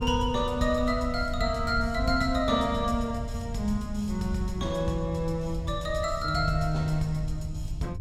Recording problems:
wind on the microphone; below 96 Hz, SNR 8 dB

